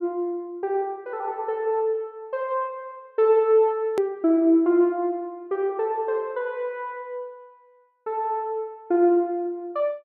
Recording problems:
click at an edit; at 4 s

